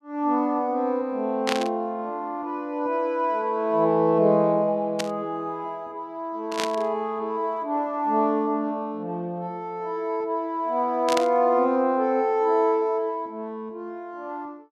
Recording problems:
static burst; 4 times, first at 1.5 s; peak +2 dB vs average level

